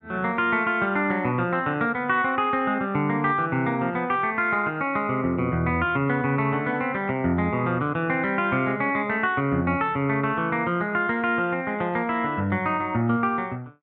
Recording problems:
none

